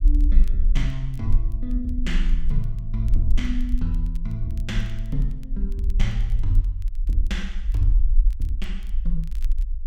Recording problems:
rumble; below 44 Hz, strongest tone 22 Hz, SNR -4 dB
crackling; vinyl, SNR 27 dB

